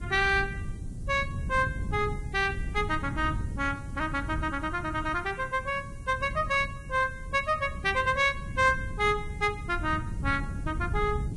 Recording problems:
lossy codec; Vorbis, log-spectral distance 3 dB, nothing above 10.1 kHz
background hiss; SNR 30 dB
wind on the microphone; below 140 Hz, SNR 8 dB

